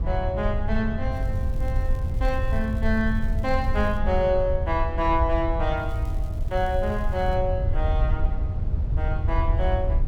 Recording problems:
rumble; below 82 Hz, SNR 0 dB
crackling; from 1 to 4 s and from 6 to 7.5 s; loose cable, SNR 27 dB

